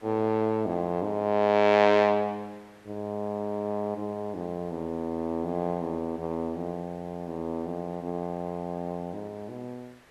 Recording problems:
background hiss; SNR 27 dB

